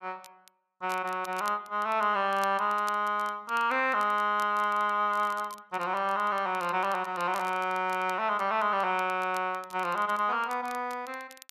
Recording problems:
crackle; vinyl, SNR 23 dB

